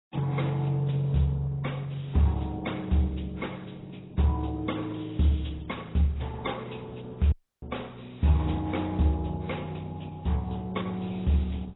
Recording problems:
lossy codec; Opus, then AAC, log-spectral distance 5 dB, nothing above 3.8 kHz
audio cutting out; at 7.5 s

